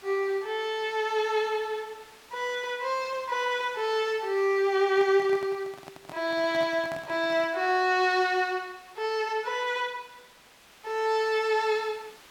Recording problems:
hiss; SNR 24 dB
handling noise; from 5 to 7.5 s; peak -9 dB vs average level

